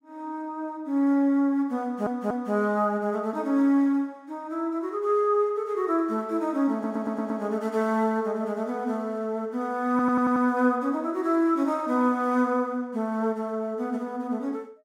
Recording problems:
audio stuttering; at 2 s, at 6.5 s and at 10 s

